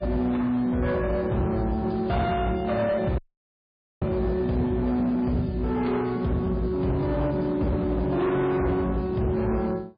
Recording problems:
lossy compression; MP3, log-spectral distance 2 dB, nothing above 4.2 kHz
distorted audio; hard clipping, uneven, signal-to-distortion ratio 10 dB
dropout; at 3 s for 1 s

